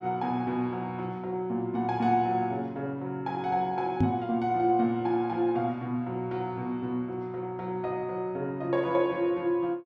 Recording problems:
microphone thump; at 4 s; peak +7 dB vs average level

